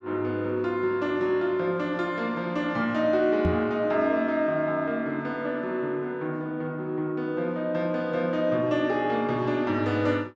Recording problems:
microphone bump; at 3.5 s; peak +3 dB vs average level

